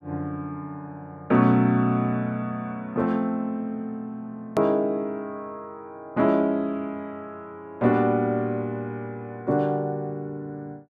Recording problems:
click at an edit; at 4.5 s

